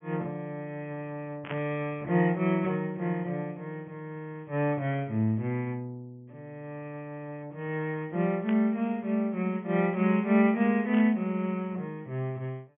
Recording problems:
treble missing; nothing above 3.2 kHz
burst of static; at 1.5 s, at 8.5 s and at 11 s; peak -5 dB vs average level

